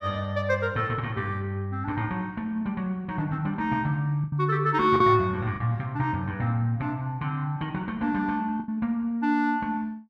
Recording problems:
lost packets; 2% of the sound replaced, filled with the last packet

